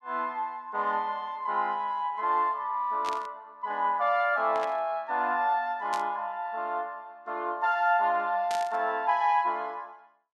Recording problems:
burst of static; 4 times, first at 3 s; peak -6 dB vs average level

